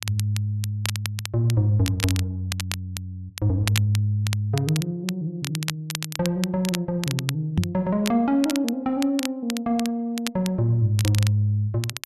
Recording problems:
crackle; vinyl, SNR 9 dB
microphone bump; at 7.5 s; peak +7 dB vs average level

